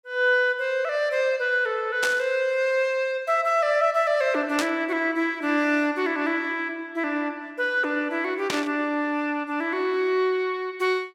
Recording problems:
static burst; at 2 s, at 4.5 s and at 8.5 s; peak +1 dB vs average level

